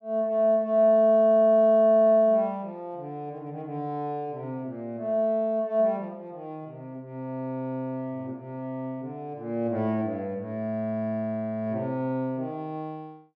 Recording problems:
none

